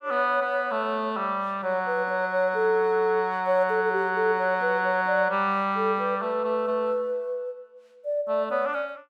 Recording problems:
none

